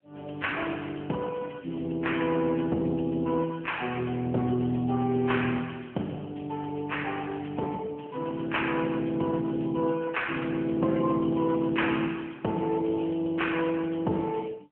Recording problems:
telephone audio; 190 Hz to 3.2 kHz, AMR-NB

